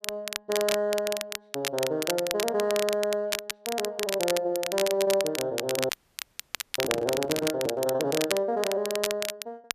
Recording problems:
crackling; vinyl, SNR 4 dB
audio freezing; at 6 s for 1 s
handling noise; at 7 s; peak -2 dB vs average level

